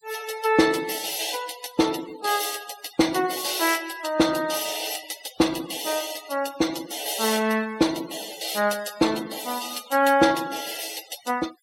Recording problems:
denoising artefacts; signal-to-artefact ratio 15 dB

